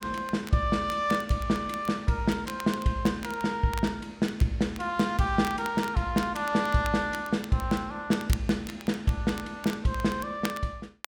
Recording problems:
crackling; vinyl, SNR 17 dB

